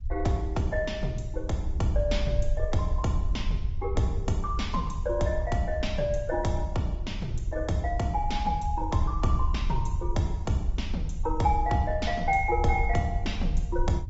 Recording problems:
treble cut off; nothing above 7.6 kHz
lossy compression; Opus, log-spectral distance 2 dB
rumble; below 66 Hz, SNR 4 dB

